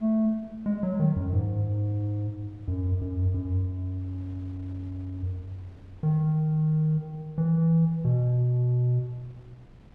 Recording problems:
wind noise; below 290 Hz, SNR 27 dB

